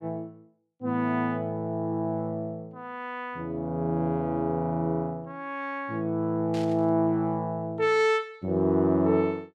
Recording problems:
burst of static; at 6.5 s; peak -11 dB vs average level

